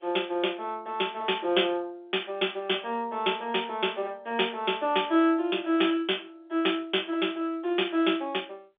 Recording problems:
phone line; 260 Hz to 3.6 kHz, G.711

